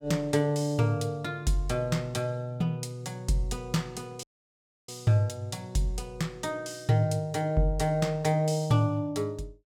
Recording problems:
dropout; at 4 s for 0.5 s

